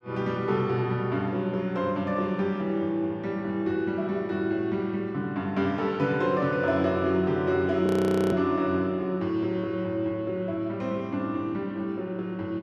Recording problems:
frozen audio; at 8 s

